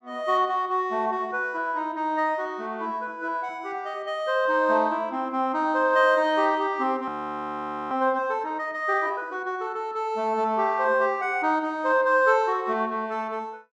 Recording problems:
audio freezing; at 7 s for 1 s

